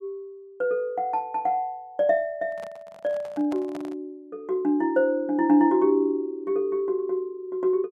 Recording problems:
handling noise; from 2.5 to 4 s; peak -9 dB vs average level

